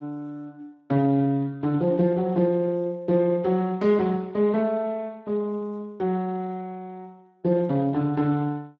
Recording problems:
codec artefacts; Speex, log-spectral distance 2 dB

